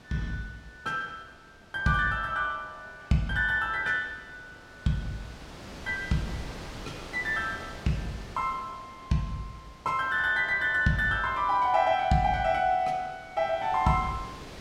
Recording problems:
wind noise; below 2.2 kHz, SNR 18 dB

